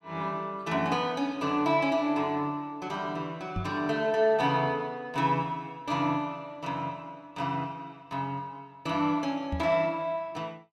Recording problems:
microphone bump; at 3.5 s and at 9.5 s; peak 0 dB vs average level

